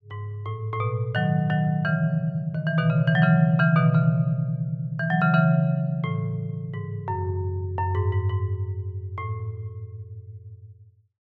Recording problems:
none

